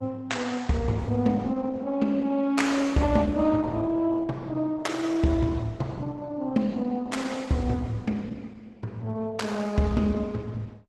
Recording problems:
lossy codec; Opus, log-spectral distance 3 dB, nothing above 12 kHz

